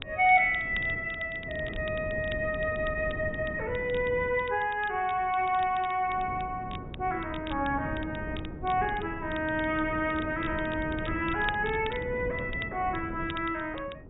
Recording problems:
treble missing; nothing above 4 kHz
wind noise; below 290 Hz, SNR 11 dB
crackle; vinyl, SNR 19 dB

